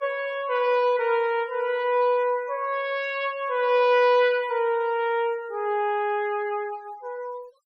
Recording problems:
denoising artefacts; signal-to-artefact ratio 25 dB

